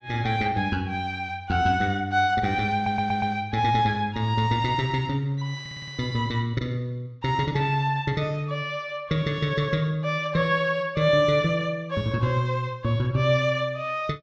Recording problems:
low-pass filter; nothing above 8 kHz
stutter; at 2.5 s and at 5.5 s

